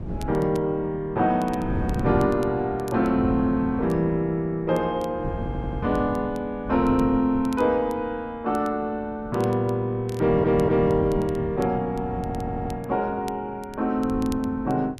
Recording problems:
wind on the microphone; below 230 Hz, SNR 10 dB
crackle; vinyl, SNR 26 dB
stutter; at 5.5 s, at 10 s and at 12 s

